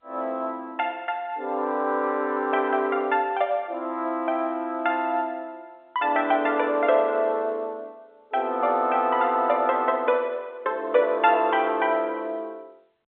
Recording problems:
phone line; 220 Hz to 3.9 kHz, G.711

